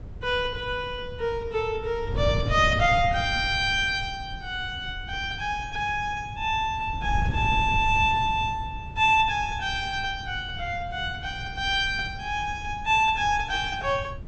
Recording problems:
treble missing; nothing above 7.9 kHz
wind noise; below 120 Hz, SNR 10 dB

